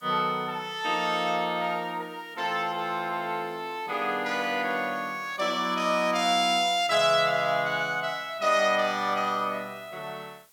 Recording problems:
background hiss; slope 0 dB per octave, SNR 30 dB

